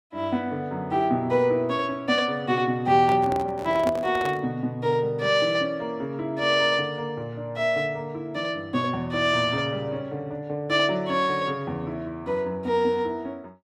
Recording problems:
handling noise; from 3 to 4.5 s; peak -2 dB vs average level

